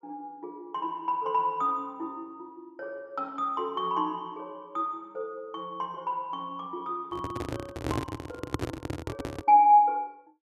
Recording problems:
handling noise; from 7 to 9.5 s; peak +2 dB vs average level

